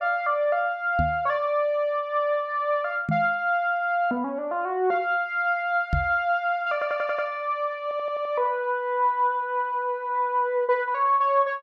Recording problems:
microphone thump; at 1 s, at 3 s and at 6 s; peak +3 dB vs average level
audio stuttering; at 6.5 s and at 8 s

